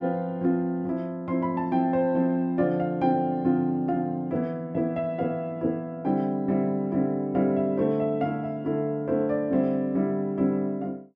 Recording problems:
none

